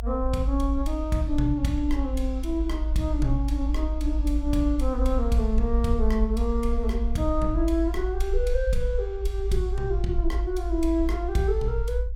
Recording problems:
rumble; below 54 Hz, strongest tone 52 Hz, SNR 1 dB

